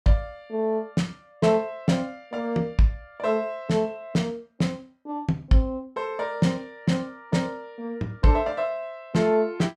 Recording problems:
none

